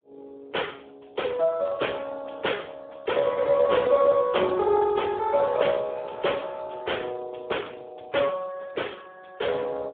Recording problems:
telephone audio; 320 Hz to 3.5 kHz, Speex

